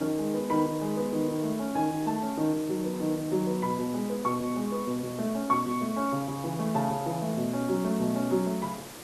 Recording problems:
background hiss; slope -4 dB per octave, SNR 14 dB

